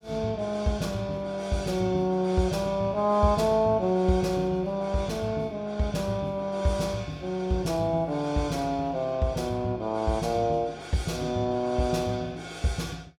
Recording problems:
none

